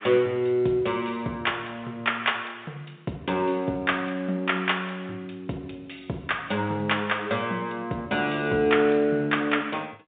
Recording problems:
telephone audio; 170 Hz to 3.7 kHz, G.711

